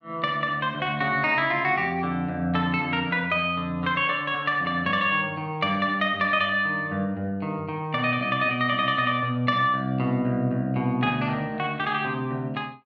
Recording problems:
none

